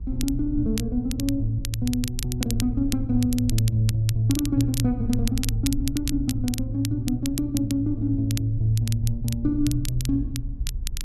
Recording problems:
wind noise; below 58 Hz, SNR 10 dB
crackle; vinyl, SNR 11 dB

